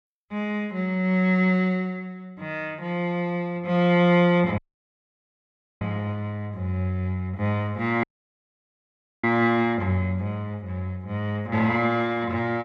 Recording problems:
audio cutting out; at 4.5 s for 1 s and at 8 s for 1 s

